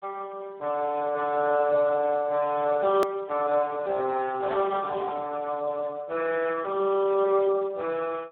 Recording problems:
telephone audio; 190 Hz to 2.2 kHz, Speex
edit click; at 3 s

